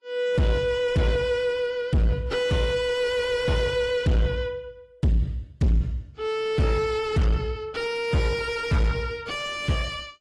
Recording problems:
lossy compression; AAC, log-spectral distance 2 dB, nothing above 11.3 kHz
distortion; soft clipping, signal-to-distortion ratio 5 dB

